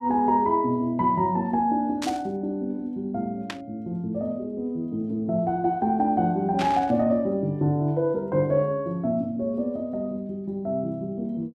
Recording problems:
burst of static; at 2 s, at 3.5 s and at 6.5 s; peak -2 dB vs average level

